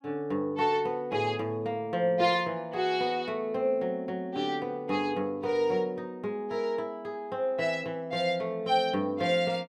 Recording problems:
none

